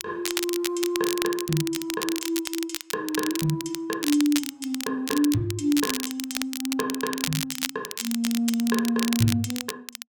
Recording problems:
crackle; vinyl, SNR 5 dB

